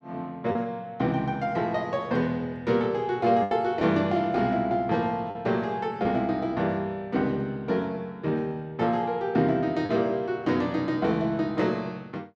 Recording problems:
lost packets; 1.7% of the sound replaced, filled with the last packet

